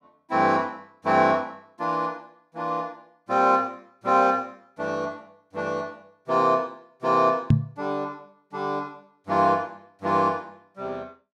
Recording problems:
microphone bump; at 7.5 s; peak +10 dB vs average level

